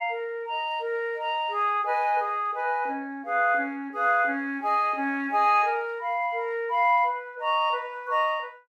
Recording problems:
none

